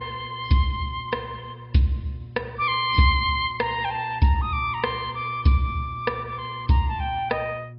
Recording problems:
low-pass filter; nothing above 4.2 kHz
lossy compression; AAC, log-spectral distance 2 dB
electrical hum; 60 Hz, harmonics up to 600 Hz, SNR 17 dB

